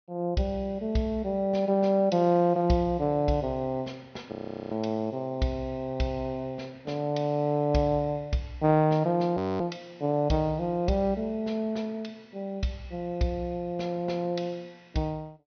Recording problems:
treble cut off; nothing above 6 kHz
audio freezing; at 4.5 s and at 9.5 s

